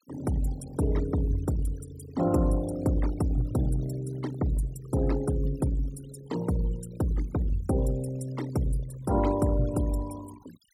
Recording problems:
denoising artefacts; signal-to-artefact ratio 16 dB

